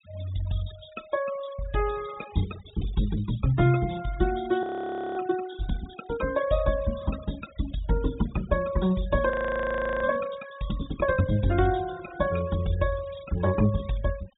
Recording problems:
treble missing; nothing above 4 kHz
denoising artefacts; signal-to-artefact ratio 18 dB
audio freezing; at 4.5 s for 0.5 s and at 9.5 s for 0.5 s

